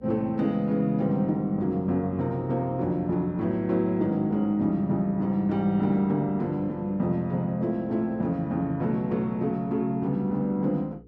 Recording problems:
hum; 60 Hz, harmonics up to 480 Hz, SNR 26 dB

